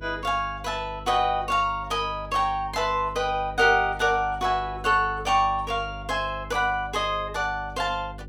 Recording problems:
hum; 50 Hz, harmonics up to 550 Hz, SNR 16 dB

